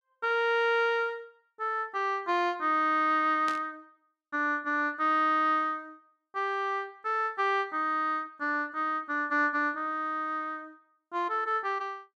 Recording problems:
static burst; at 3.5 s; peak -7 dB vs average level

